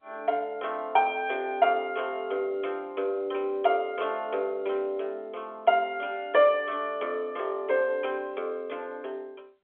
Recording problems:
phone line; 300 Hz to 3.4 kHz, G.711

